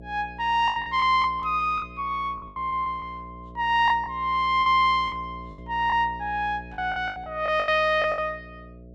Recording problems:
mains hum; 60 Hz, harmonics up to 660 Hz, SNR 19 dB
packet loss; 11% of the sound replaced, filled with the last packet

